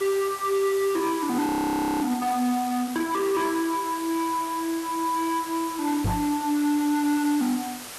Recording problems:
distorted audio; hard clipping, signal-to-distortion ratio 11 dB
hiss; slope -1 dB per octave, SNR 12 dB
audio freezing; at 1.5 s for 0.5 s
knock on the microphone; at 6 s; peak +2 dB vs average level

